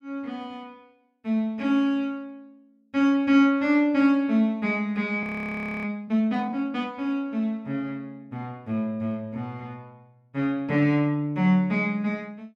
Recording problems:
frozen audio; at 5 s for 0.5 s

